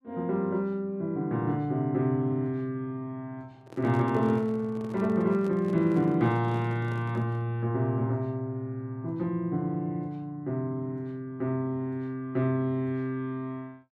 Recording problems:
handling noise; from 3.5 to 7.5 s; peak -9 dB vs average level

